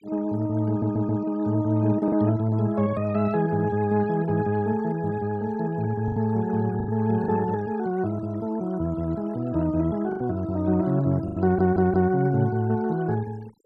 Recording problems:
denoising artefacts; signal-to-artefact ratio 23 dB
packet loss; 3% of the sound replaced, filled with the last packet
stutter; at 0.5 s and at 11 s

